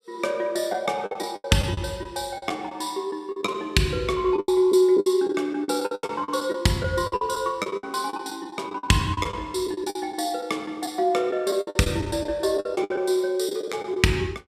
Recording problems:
packet loss; 14% of the sound replaced, filled with the last packet

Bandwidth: 15 kHz